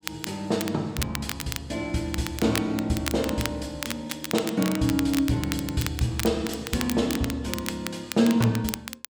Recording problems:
crackle; vinyl, SNR 8 dB

